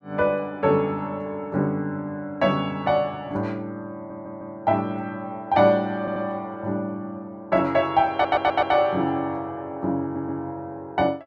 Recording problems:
audio stuttering; 4 times, first at 4 s

